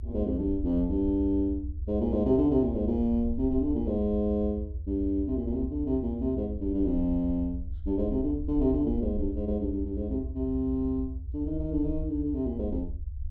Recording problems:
low-frequency rumble; below 80 Hz, SNR 8 dB

